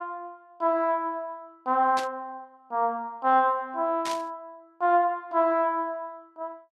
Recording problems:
burst of static; at 2 s and at 4 s; peak -4 dB vs average level

